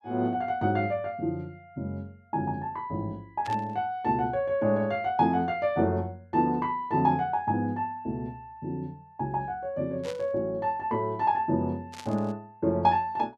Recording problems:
burst of static; at 3.5 s, at 10 s and at 12 s; peak -9 dB vs average level

